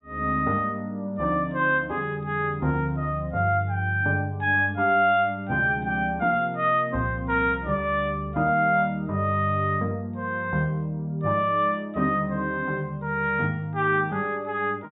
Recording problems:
low-pass filter; nothing above 4 kHz

